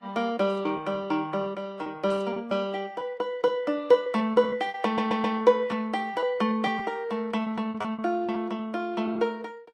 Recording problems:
codec artefacts; Vorbis, then Vorbis, log-spectral distance 2 dB, nothing above 13.5 kHz
packet loss; 10% of the sound replaced, filled with repeated pitch periods
audio stuttering; at 5 s

